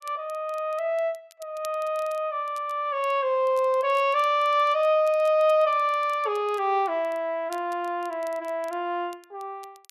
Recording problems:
crackling; vinyl, SNR 28 dB

